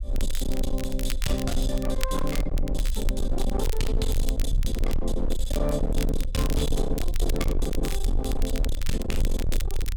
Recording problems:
distorted audio; hard clipping, signal-to-distortion ratio 7 dB
low-frequency rumble; below 46 Hz, strongest tone 20 Hz, SNR 0 dB
crackling; vinyl, SNR 10 dB

